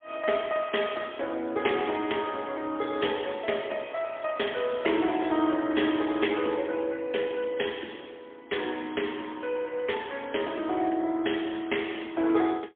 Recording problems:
telephone audio; 260 Hz to 3.4 kHz, AMR-NB, then MP3

